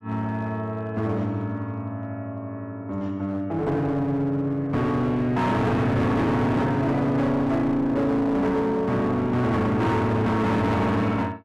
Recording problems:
distorted audio; hard clipping, uneven, signal-to-distortion ratio 6 dB

